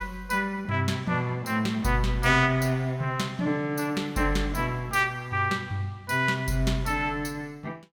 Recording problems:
none

